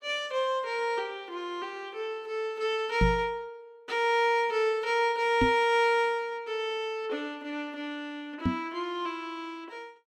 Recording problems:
microphone thump; at 3 s, at 5.5 s and at 8.5 s; peak +7 dB vs average level

